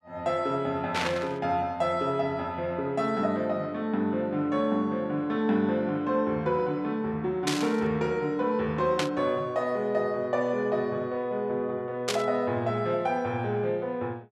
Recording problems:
static burst; 4 times, first at 1 s; peak +3 dB vs average level

